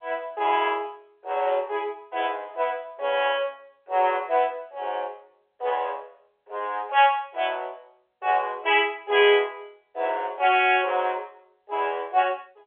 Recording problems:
phone line; 340 Hz to 3.6 kHz, G.711

